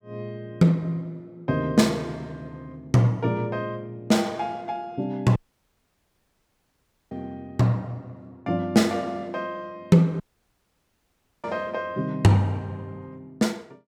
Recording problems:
audio cutting out; at 5.5 s for 2 s and at 10 s for 1 s

